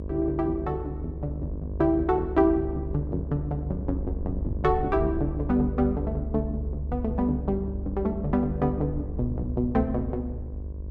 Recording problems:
hum; 50 Hz, harmonics up to 1.1 kHz, SNR 13 dB
low-frequency rumble; below 70 Hz, strongest tone 68 Hz, SNR 7 dB

